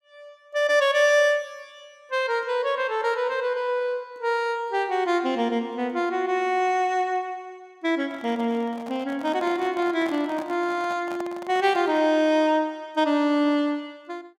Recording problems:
handling noise; from 8 to 12 s; peak -8 dB vs average level

